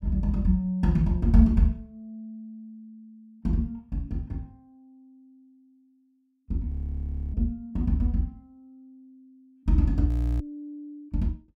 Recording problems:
audio freezing; at 6.5 s for 0.5 s and at 10 s

